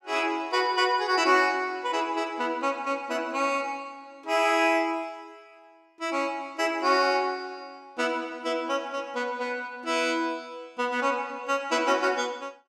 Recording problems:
none

